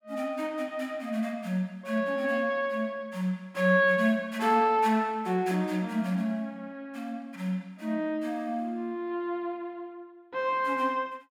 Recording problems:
none

